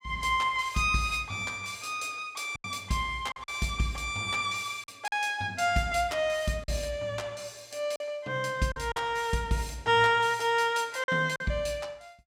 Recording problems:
lost packets; 4% of the sound replaced, filled with silence

